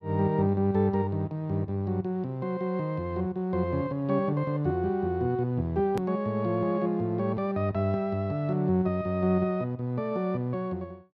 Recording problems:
edit click; at 6 s

